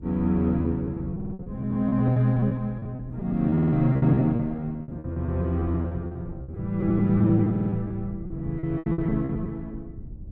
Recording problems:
hum; 60 Hz, harmonics up to 360 Hz, SNR 24 dB
low-frequency rumble; below 140 Hz, SNR 16 dB
lost packets; 18% of the sound replaced, filled with repeated pitch periods
stutter; at 1 s, at 3.5 s and at 7.5 s

